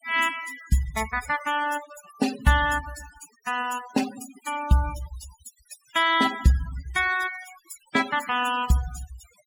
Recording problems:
denoising artefacts; signal-to-artefact ratio 13 dB

